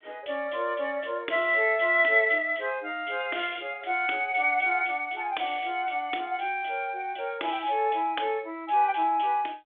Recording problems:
phone line; 280 Hz to 3.5 kHz, G.726

